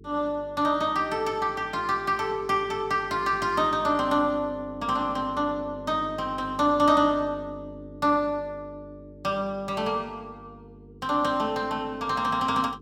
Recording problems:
electrical hum; 50 Hz, harmonics up to 450 Hz, SNR 20 dB

